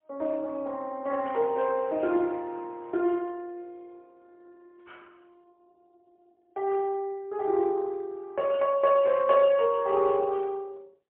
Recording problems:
phone line; 260 Hz to 3.4 kHz, AMR-NB, then MP3

